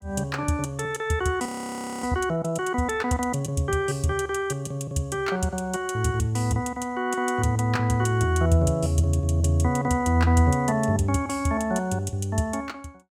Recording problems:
audio freezing; at 1.5 s for 0.5 s

